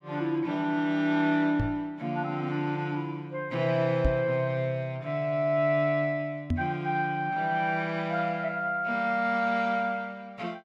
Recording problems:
knock on the microphone; at 1.5 s, at 4 s and at 6.5 s; peak +5 dB vs average level

